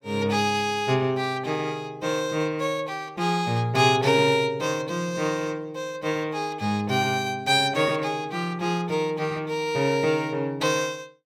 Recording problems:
none

